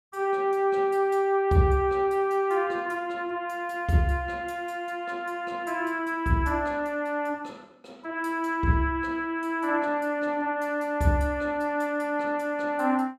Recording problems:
none

